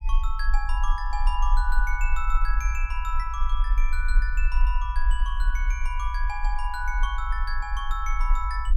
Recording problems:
low-frequency rumble; below 44 Hz, strongest tone 22 Hz, SNR -4 dB

